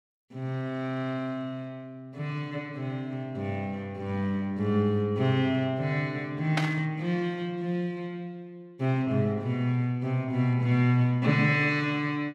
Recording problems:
static burst; at 6.5 s; peak +3 dB vs average level

